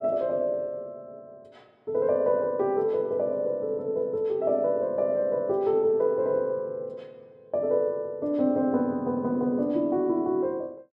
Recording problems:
none

